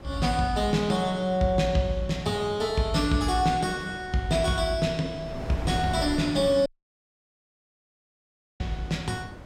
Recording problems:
wind noise; below 530 Hz, SNR 15 dB
dropout; at 6.5 s for 2 s

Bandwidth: 16.5 kHz